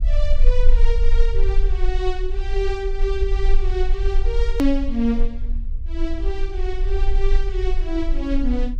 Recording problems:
rumble; below 38 Hz, strongest tone 22 Hz, SNR -3 dB
hard cut with a click; at 4.5 s

